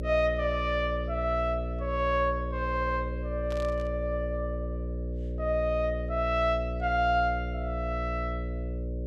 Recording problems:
hum; 60 Hz, harmonics up to 600 Hz, SNR 4 dB
burst of static; at 3.5 s; peak -11 dB vs average level

